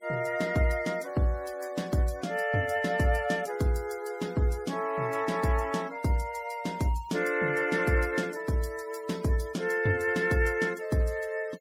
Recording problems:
noise reduction artefacts; signal-to-artefact ratio 22 dB

